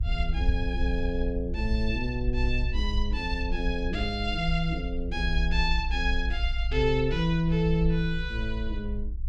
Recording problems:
low-frequency rumble; below 56 Hz, strongest tone 24 Hz, SNR 2 dB

